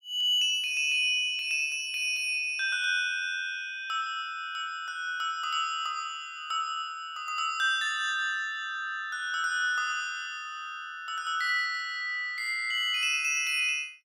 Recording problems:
none

